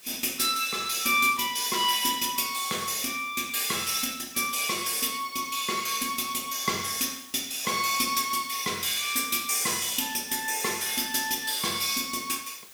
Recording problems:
background hiss; slope +1 dB per octave, SNR 21 dB

